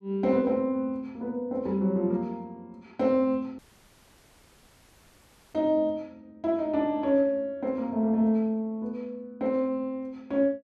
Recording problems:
dropout; at 3.5 s for 2 s

